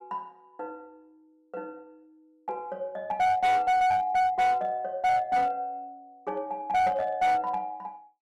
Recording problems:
distortion; hard clipping, uneven, signal-to-distortion ratio 10 dB

